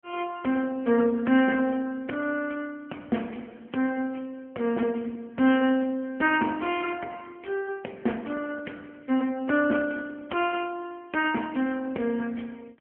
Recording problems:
phone line; 170 Hz to 3.2 kHz, AMR-NB

